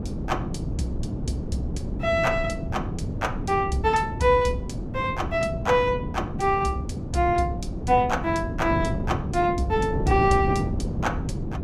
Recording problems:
wind on the microphone; below 250 Hz, SNR 5 dB

